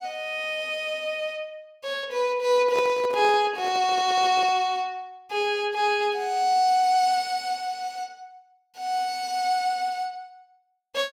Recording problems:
handling noise; from 2.5 to 4.5 s; peak -4 dB vs average level

